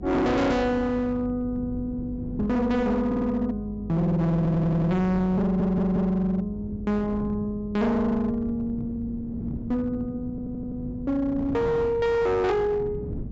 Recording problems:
low-pass filter; nothing above 8 kHz
distorted audio; hard clipping, signal-to-distortion ratio 6 dB
electrical hum; 50 Hz, harmonics up to 500 Hz, SNR 16 dB
wind noise; below 250 Hz, SNR 13 dB
stutter; 4 times, first at 3 s

